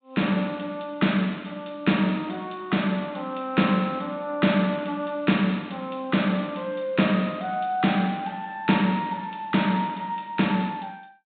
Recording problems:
low-pass filter; nothing above 4 kHz

